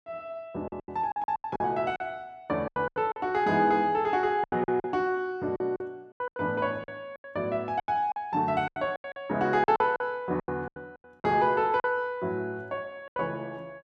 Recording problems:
lost packets; 14% of the sound replaced, filled with silence

